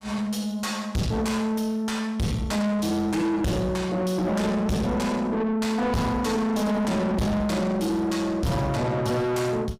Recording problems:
distorted audio; soft clipping, signal-to-distortion ratio 5 dB

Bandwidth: 15.5 kHz